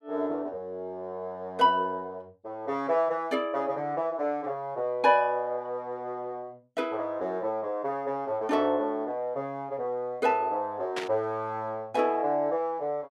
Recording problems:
burst of static; at 11 s; peak -1 dB vs average level

